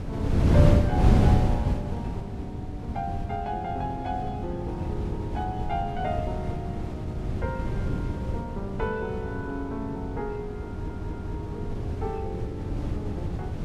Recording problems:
wind noise; below 200 Hz, SNR -5 dB
stutter; at 11 s

